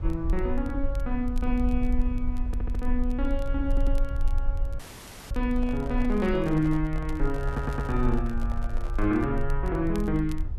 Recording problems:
rumble; below 48 Hz, strongest tone 22 Hz, SNR 3 dB
crackling; vinyl, SNR 27 dB
audio stuttering; at 2.5 s, at 3.5 s and at 7.5 s
audio cutting out; at 5 s for 0.5 s
handling noise; from 5.5 to 9.5 s; peak -10 dB vs average level

